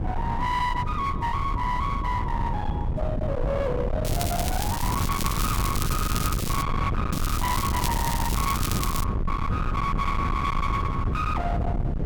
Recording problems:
distorted audio; hard clipping, signal-to-distortion ratio 6 dB
low-frequency rumble; below 260 Hz, SNR 0 dB
crackling; from 4 to 6.5 s and from 7 to 9 s; loose cable, SNR 4 dB

